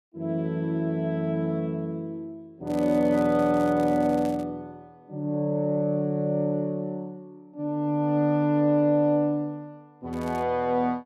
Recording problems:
crackle; from 2.5 to 4.5 s and at 10 s; loose cable, SNR 24 dB

